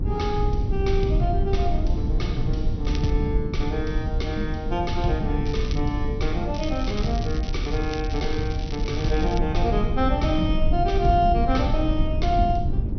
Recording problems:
treble missing; nothing above 6.1 kHz
low-frequency rumble; below 100 Hz, SNR 1 dB
crackle; at 3 s, at 5.5 s and from 6.5 to 9.5 s; loose cable, SNR 14 dB

